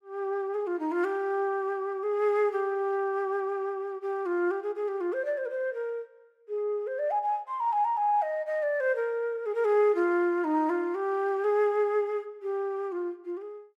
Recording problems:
none

